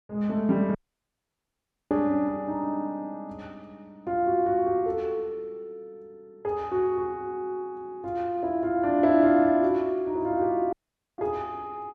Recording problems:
dropout; at 1 s for 1 s and at 11 s

